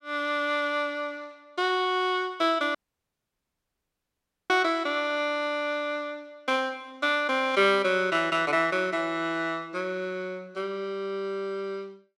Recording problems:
audio cutting out; at 3 s for 2 s

